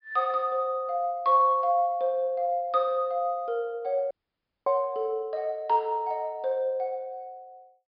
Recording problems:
treble cut off; nothing above 5.5 kHz
audio cutting out; at 4 s for 0.5 s

